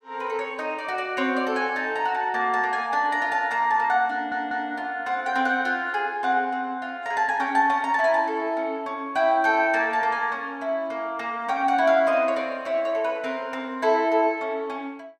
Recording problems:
audio stuttering; at 4 s

